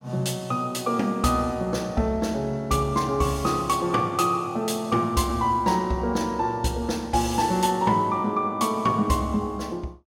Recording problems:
none

